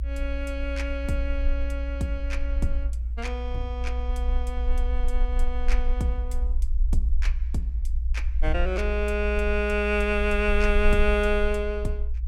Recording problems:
low-frequency rumble; below 58 Hz, SNR 0 dB

